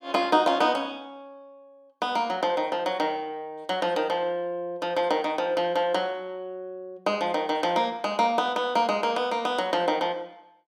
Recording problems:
none

